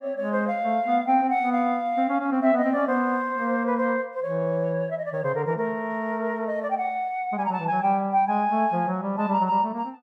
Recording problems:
none

